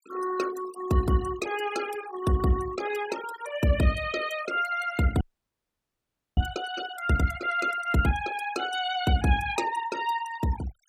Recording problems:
denoising artefacts; signal-to-artefact ratio 13 dB
audio freezing; at 5 s for 1 s

